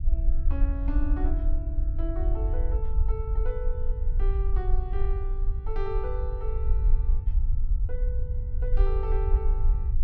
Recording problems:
rumble; below 52 Hz, SNR -10 dB

